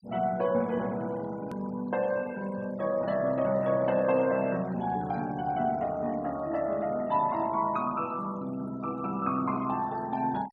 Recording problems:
noise reduction artefacts; signal-to-artefact ratio 21 dB
click at an edit; at 1.5 s

